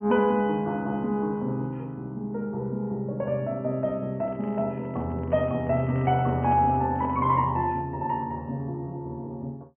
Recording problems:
treble cut off; nothing above 3.2 kHz
handling noise; from 4 to 7.5 s; peak -10 dB vs average level

